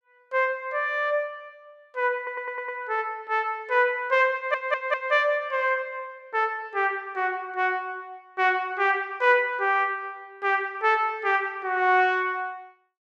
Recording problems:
stutter; at 2 s and at 4.5 s

